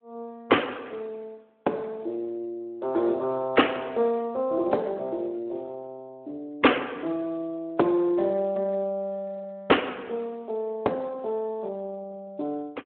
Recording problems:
telephone audio; 300 Hz to 3.2 kHz, Speex

